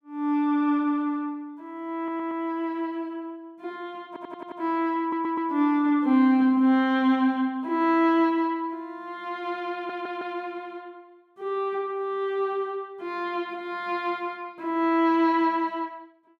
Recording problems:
stutter; 4 times, first at 2 s

